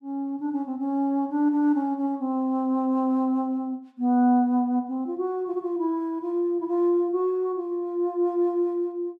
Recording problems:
none

